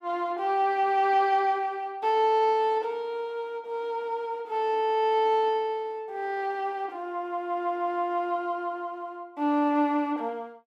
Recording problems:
none

